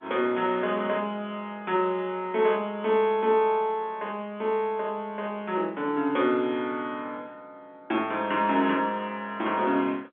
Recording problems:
telephone audio; 220 Hz to 3.6 kHz, G.711

